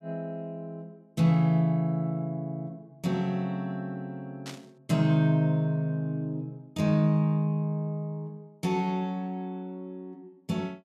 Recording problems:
burst of static; at 4.5 s; peak -9 dB vs average level

